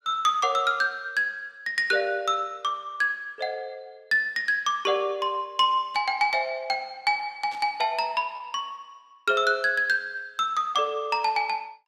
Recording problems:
packet loss; 0.4% of the sound replaced, filled with repeated pitch periods
static burst; at 6 s and at 7.5 s; peak -15 dB vs average level

